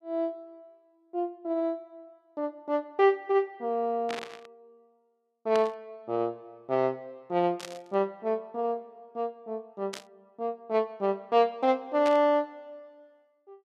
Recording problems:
burst of static; 5 times, first at 4 s; peak -5 dB vs average level

